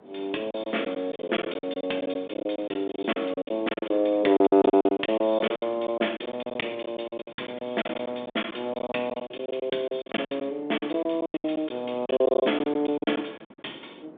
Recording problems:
telephone audio; 220 Hz to 3.6 kHz, G.726
wind on the microphone; below 590 Hz, SNR 23 dB
lost packets; 18% of the sound replaced, filled with silence

